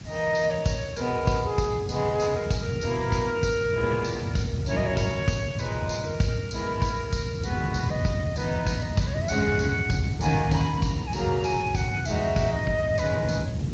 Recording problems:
lossy codec; Speex, then MP3, log-spectral distance 5 dB, nothing above 6.3 kHz
hiss; slope 0 dB per octave, SNR 22 dB
wind on the microphone; below 180 Hz, SNR 5 dB

